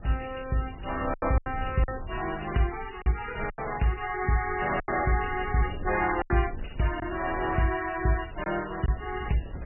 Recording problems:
codec artefacts; MP3, log-spectral distance 8 dB, nothing above 2.9 kHz
wind on the microphone; below 130 Hz, SNR 13 dB
packet loss; 6% of the sound replaced, filled with silence

